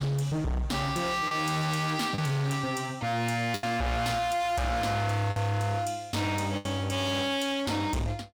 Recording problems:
distorted audio; hard clipping, signal-to-distortion ratio 6 dB
packet loss; 3% of the sound replaced, filled with the last packet

